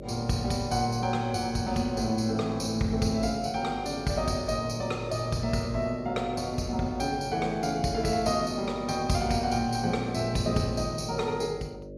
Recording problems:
electrical hum; 50 Hz, harmonics up to 600 Hz, SNR 13 dB

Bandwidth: 15 kHz